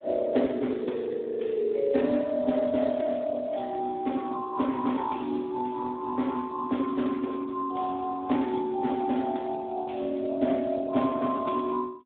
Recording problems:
phone line; 190 Hz to 3.7 kHz, Speex

